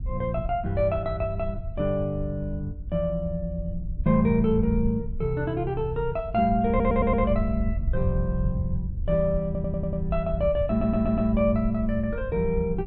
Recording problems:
treble missing; nothing above 6.6 kHz
wind on the microphone; below 80 Hz, SNR 7 dB
stutter; at 6.5 s, at 9.5 s and at 11 s

